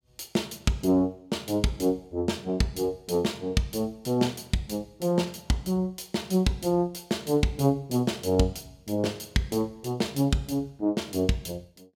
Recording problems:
none

